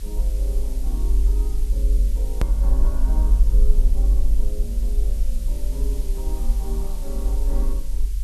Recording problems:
hiss; slope +5 dB per octave, SNR 7 dB
low-frequency rumble; below 48 Hz, SNR -14 dB
click at an edit; at 2.5 s

